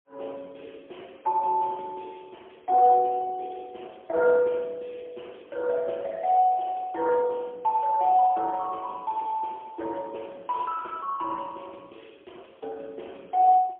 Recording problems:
telephone audio; 280 Hz to 3.3 kHz, AMR-NB, then MP3

